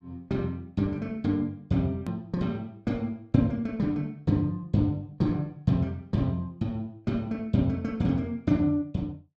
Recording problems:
edit click; at 2 s

